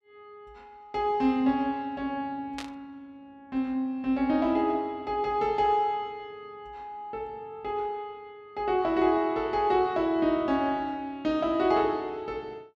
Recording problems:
burst of static; at 2.5 s; peak -6 dB vs average level

